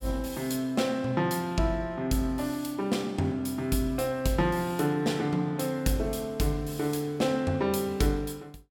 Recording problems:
none

